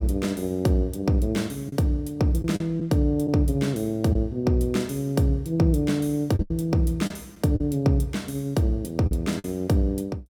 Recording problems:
packet loss; 4% of the sound replaced, filled with the last packet

